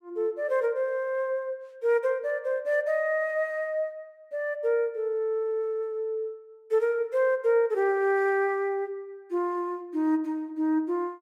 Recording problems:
none

